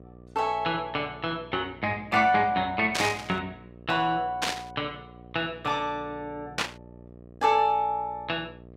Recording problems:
hum; 60 Hz, harmonics up to 780 Hz, SNR 21 dB
static burst; at 3 s, at 4.5 s and at 6.5 s; peak +4 dB vs average level

